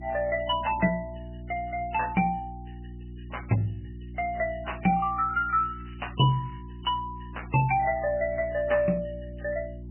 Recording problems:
lossy codec; MP3, log-spectral distance 7 dB, nothing above 2.7 kHz
hum; 60 Hz, harmonics up to 360 Hz, SNR 14 dB
crackling; from 5 to 6.5 s; loose cable, SNR 28 dB

